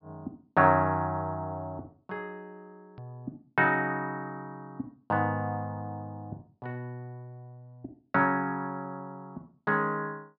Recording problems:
low-pass filter; nothing above 5.5 kHz
edit click; at 3 s

